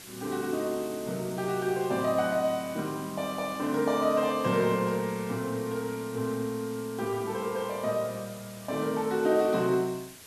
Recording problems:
hiss; slope 0 dB per octave, SNR 17 dB

